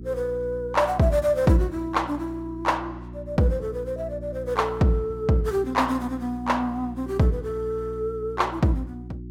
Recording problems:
electrical hum; 60 Hz, harmonics up to 360 Hz, SNR 13 dB

